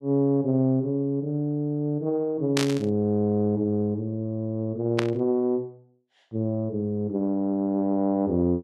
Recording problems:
burst of static; at 2.5 s and at 5 s; peak +2 dB vs average level

